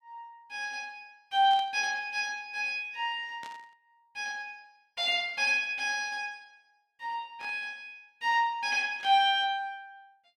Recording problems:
static burst; 4 times, first at 1.5 s; peak -14 dB vs average level

